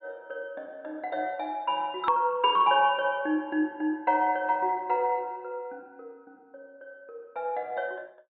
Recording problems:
low-pass filter; nothing above 4 kHz
edit click; at 2 s

